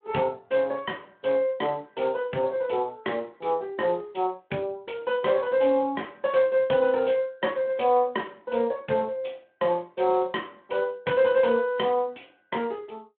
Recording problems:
telephone audio; 170 Hz to 3.5 kHz, Speex

